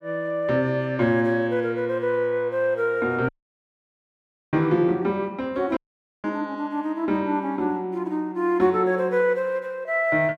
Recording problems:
audio cutting out; at 3.5 s for 1 s and at 6 s

